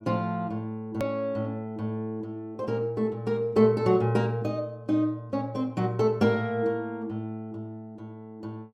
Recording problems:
hard cut with a click; at 1 s

